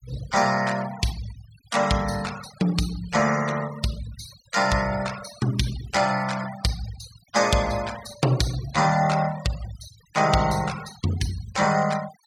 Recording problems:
denoising artefacts; signal-to-artefact ratio 15 dB

